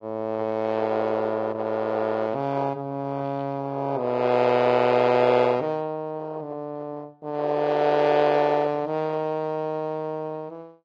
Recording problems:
codec artefacts; AAC, log-spectral distance 3 dB

